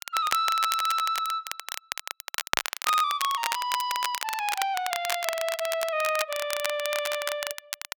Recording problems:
crackling; vinyl, SNR 5 dB

